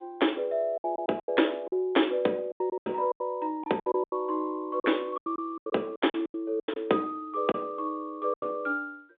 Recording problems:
telephone audio; 220 Hz to 3.6 kHz, G.726
lost packets; 14% of the sound replaced, filled with silence

